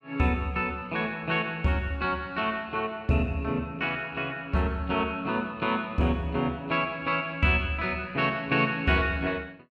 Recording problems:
none

